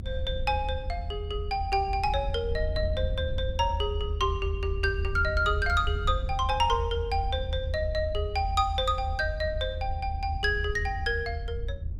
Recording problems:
rumble; below 80 Hz, SNR 4 dB

